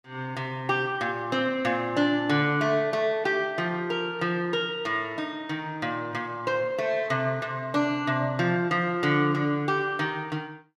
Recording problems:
none

